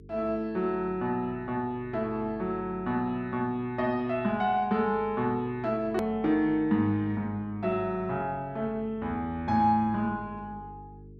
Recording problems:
hum; 50 Hz, harmonics up to 450 Hz, SNR 21 dB
click at an edit; at 6 s

